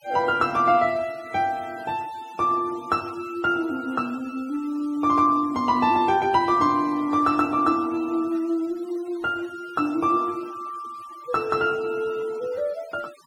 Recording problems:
noise reduction artefacts; signal-to-artefact ratio 23 dB

